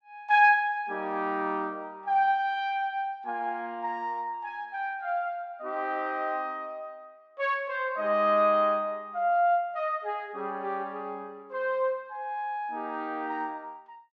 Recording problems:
none

